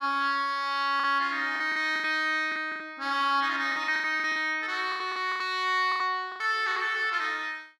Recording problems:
packet loss; 13% of the sound replaced, filled with the last packet

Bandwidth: 14.5 kHz